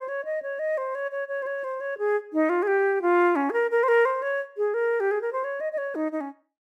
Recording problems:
none

